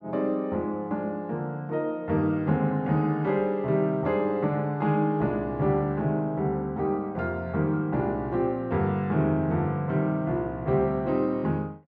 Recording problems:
none

